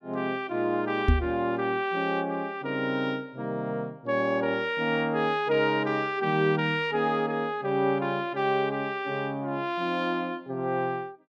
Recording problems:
microphone thump; at 1 s; peak +8 dB vs average level

